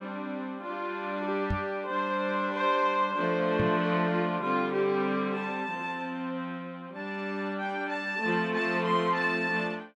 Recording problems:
knock on the microphone; at 1.5 s and at 3.5 s; peak +2 dB vs average level

